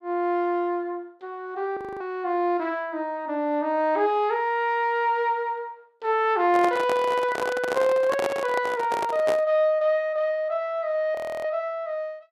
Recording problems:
audio freezing; at 2 s and at 11 s
microphone handling noise; from 6.5 to 9.5 s; peak 0 dB vs average level

